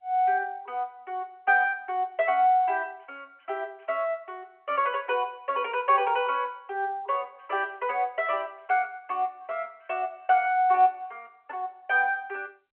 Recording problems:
phone line; 320 Hz to 3.3 kHz, G.711

